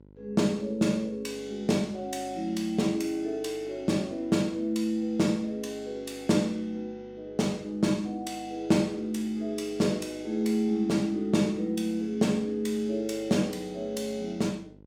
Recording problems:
electrical hum; 50 Hz, harmonics up to 1 kHz, SNR 25 dB

